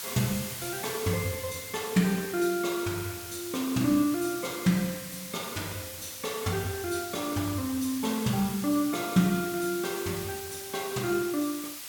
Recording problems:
hiss; slope +2 dB per octave, SNR 8 dB

